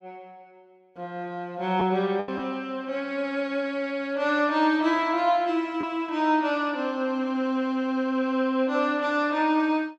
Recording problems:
lost packets; 1.3% of the sound replaced, filled with the last packet

